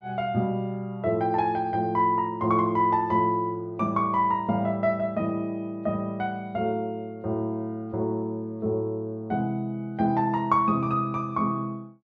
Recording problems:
none

